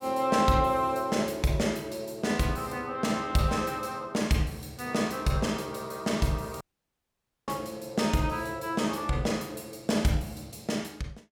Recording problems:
dropout; at 6.5 s for 1 s

